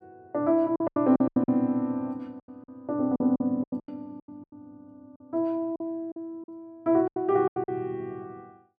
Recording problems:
packet loss; 15% of the sound replaced, filled with silence

